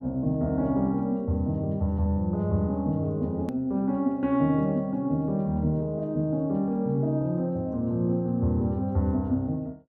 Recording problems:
edit click; at 3.5 s

